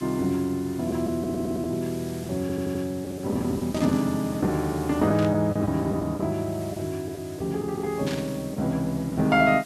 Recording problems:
hiss; slope -1 dB per octave, SNR 19 dB
packet loss; 6% of the sound replaced, filled with the last packet
audio stuttering; at 1 s and at 2.5 s
burst of static; at 3.5 s, at 5 s and at 8 s; peak -5 dB vs average level

